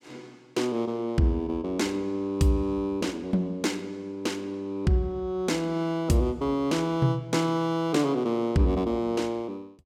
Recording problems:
none

